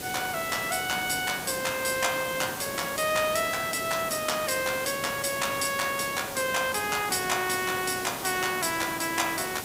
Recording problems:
background hiss; SNR 8 dB

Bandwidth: 15.5 kHz